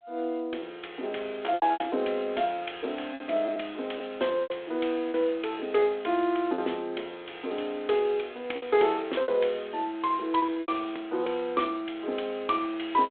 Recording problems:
telephone audio; 260 Hz to 3.6 kHz, G.726
packet loss; 7% of the sound replaced, filled with repeated pitch periods

